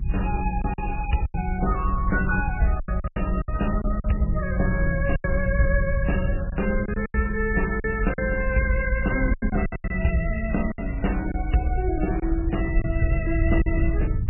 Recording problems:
lossy compression; MP3, log-spectral distance 4 dB, nothing above 2.8 kHz
rumble; below 78 Hz, SNR 2 dB
packet loss; 8% of the sound replaced, filled with silence

